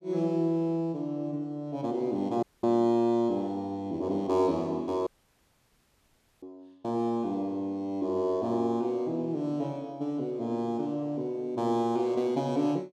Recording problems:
dropout; at 2.5 s and at 5 s for 1.5 s

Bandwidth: 14 kHz